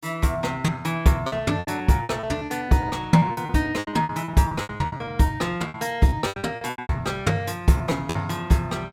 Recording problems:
lost packets; 17% of the sound replaced, filled with repeated pitch periods

